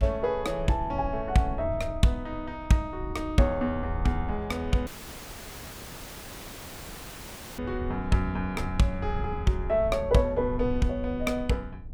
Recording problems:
low-frequency rumble; below 90 Hz, SNR 10 dB
audio cutting out; at 5 s for 2.5 s

